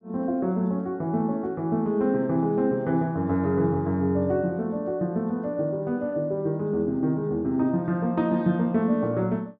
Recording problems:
none

